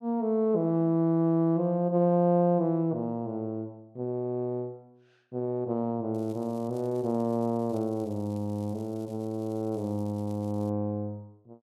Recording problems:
crackling; from 6 to 11 s; loose cable, SNR 30 dB

